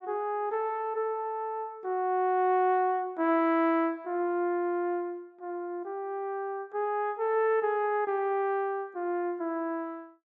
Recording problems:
none

